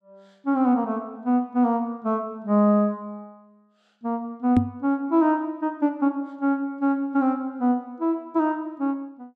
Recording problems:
microphone bump; at 4.5 s; peak +7 dB vs average level

